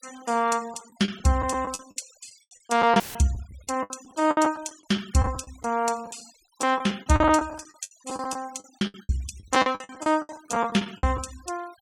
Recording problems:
noise reduction artefacts; signal-to-artefact ratio 22 dB
lost packets; 17% of the sound replaced, filled with the last packet
dropout; at 3 s; filled with static

